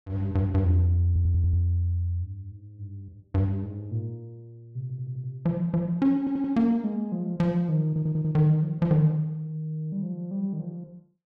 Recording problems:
audio stuttering; 4 times, first at 1 s

